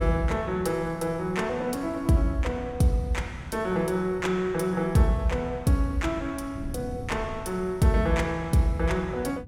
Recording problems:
wind noise; below 180 Hz, SNR 17 dB

